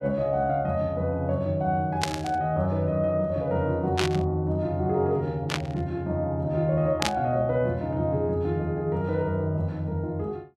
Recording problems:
burst of static; 4 times, first at 2 s; peak +5 dB vs average level

